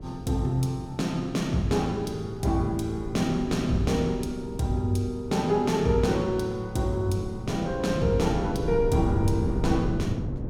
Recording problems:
wind on the microphone; below 230 Hz, SNR 8 dB

